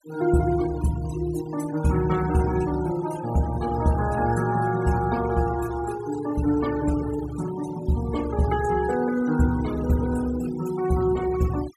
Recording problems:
noise reduction artefacts; signal-to-artefact ratio 17 dB

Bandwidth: 14.5 kHz